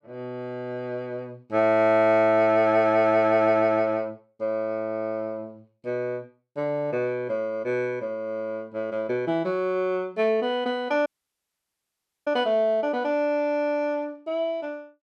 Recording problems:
audio cutting out; at 11 s for 1 s

